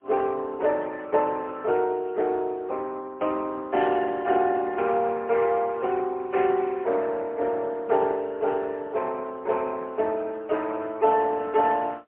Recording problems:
telephone audio; 320 Hz to 3 kHz, AMR-NB, then MP3

